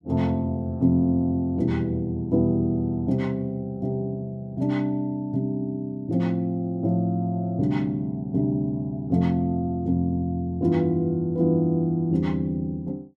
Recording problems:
none

